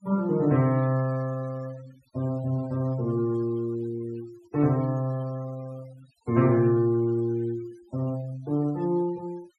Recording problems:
noise reduction artefacts; signal-to-artefact ratio 24 dB

